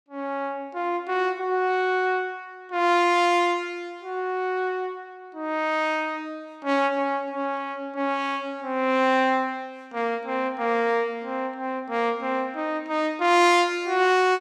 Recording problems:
none

